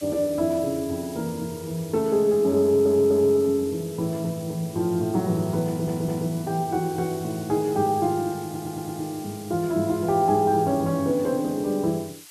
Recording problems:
background hiss; slope +3 dB per octave, SNR 19 dB
audio stuttering; at 2.5 s, at 5.5 s and at 8.5 s

